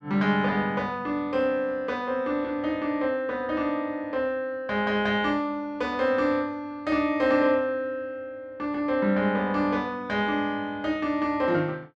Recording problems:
none

